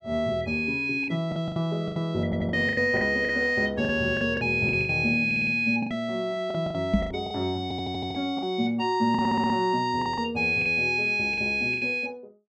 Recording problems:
packet loss; 12% of the sound replaced, filled with the last packet
audio stuttering; 4 times, first at 2.5 s
microphone bump; at 7 s; peak +6 dB vs average level

